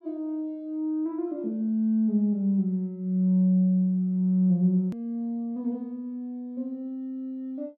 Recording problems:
click at an edit; at 5 s

